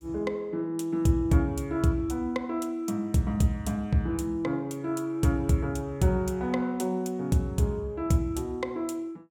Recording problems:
none

